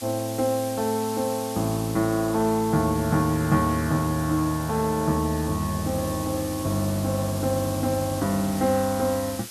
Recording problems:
background hiss; slope +2 dB per octave, SNR 12 dB

